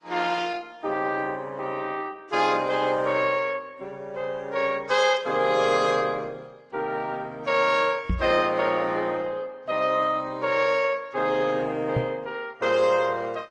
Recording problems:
codec artefacts; Opus, then AAC, log-spectral distance 3 dB
knock on the microphone; at 8 s and at 12 s; peak +2 dB vs average level

